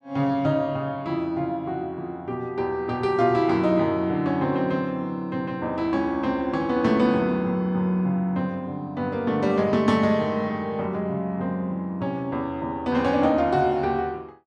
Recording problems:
none

